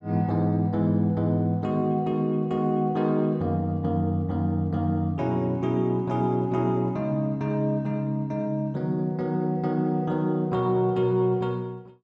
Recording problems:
none

